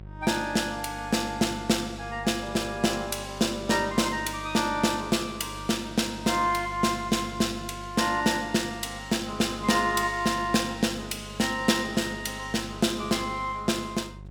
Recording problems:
electrical hum; 50 Hz, harmonics up to 750 Hz, SNR 17 dB

